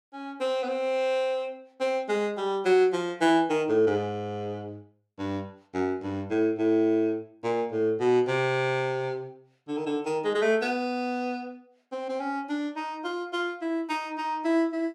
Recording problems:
none

